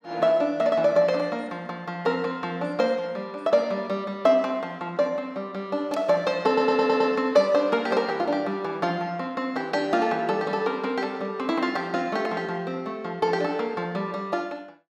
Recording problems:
stutter; at 6.5 s

